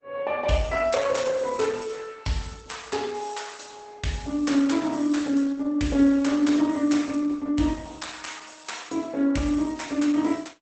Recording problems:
codec artefacts; Opus, log-spectral distance 6 dB, nothing above 8 kHz

